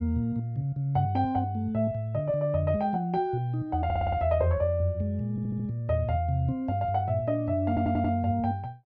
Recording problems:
stutter; at 4 s, at 5.5 s and at 7.5 s

